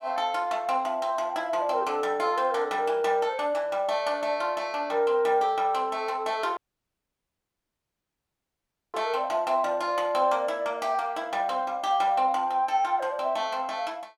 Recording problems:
dropout; at 6.5 s for 2.5 s

